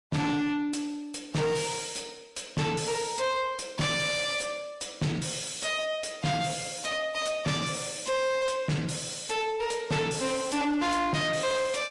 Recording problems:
lossy compression; Vorbis, log-spectral distance 5 dB, nothing above 10.4 kHz
distortion; soft clipping, signal-to-distortion ratio 7 dB

